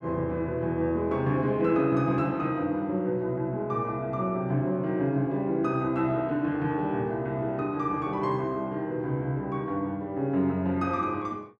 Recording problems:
none

